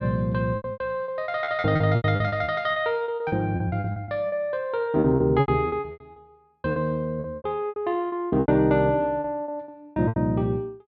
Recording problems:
lost packets; 19% of the sound replaced, filled with repeated pitch periods

